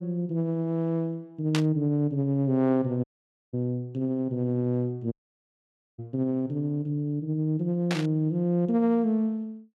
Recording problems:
static burst; at 1.5 s and at 8 s; peak +1 dB vs average level
dropout; at 3 s and at 5 s for 1 s

